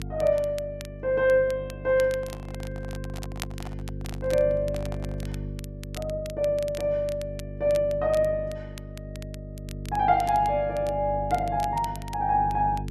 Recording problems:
mains hum; 50 Hz, harmonics up to 450 Hz, SNR 11 dB
crackle; vinyl, SNR 21 dB
microphone handling noise; from 2 to 5.5 s; peak -10 dB vs average level

